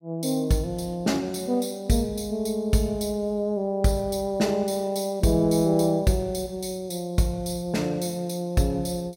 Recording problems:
none

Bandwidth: 16 kHz